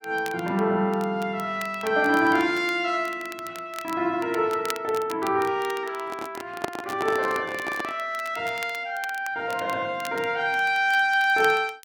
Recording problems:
crackling; vinyl, SNR 18 dB
microphone handling noise; from 6 to 8 s; peak +1 dB vs average level

